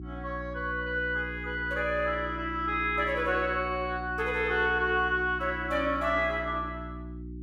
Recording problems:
electrical hum; 60 Hz, harmonics up to 360 Hz, SNR 12 dB

